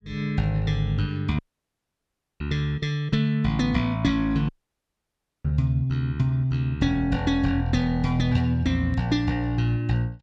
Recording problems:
audio cutting out; at 1.5 s for 1 s and at 4.5 s for 1 s

